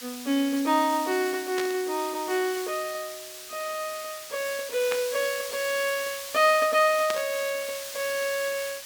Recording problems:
hiss; slope +3 dB per octave, SNR 10 dB
static burst; at 1.5 s, at 5 s and at 7 s; peak -2 dB vs average level

